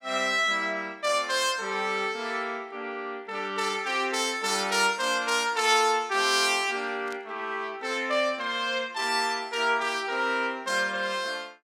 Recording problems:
burst of static; at 7 s and at 9 s; peak -12 dB vs average level

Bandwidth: 16.5 kHz